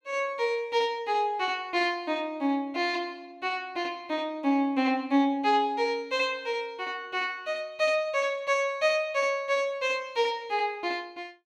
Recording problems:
none

